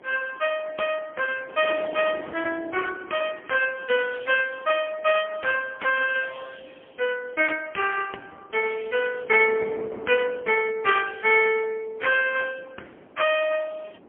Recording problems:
telephone audio; 280 Hz to 3.1 kHz, AMR-NB, then MP3
wind noise; below 690 Hz, SNR 20 dB

